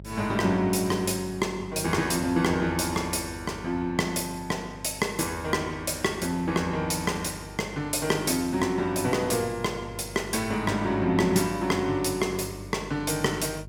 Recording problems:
mains hum; 50 Hz, harmonics up to 450 Hz, SNR 18 dB

